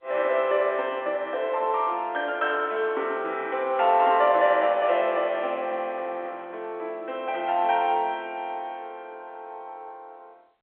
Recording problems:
telephone audio; 300 Hz to 3.6 kHz, G.711

